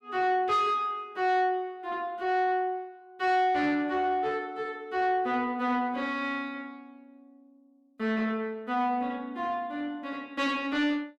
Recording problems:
distortion; soft clipping, signal-to-distortion ratio 11 dB

